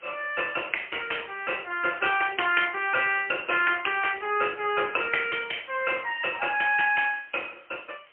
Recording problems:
phone line; 260 Hz to 3.1 kHz, AMR-NB, then MP3
hiss; SNR 29 dB

